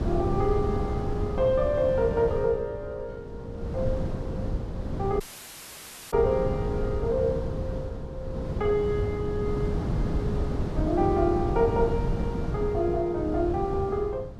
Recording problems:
wind on the microphone; below 230 Hz, SNR 4 dB
audio cutting out; at 5 s for 1 s

